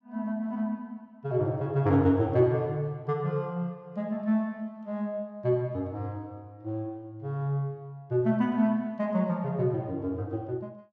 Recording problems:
none

